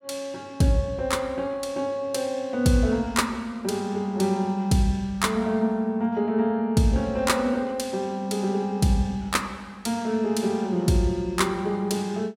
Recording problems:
none

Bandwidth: 16 kHz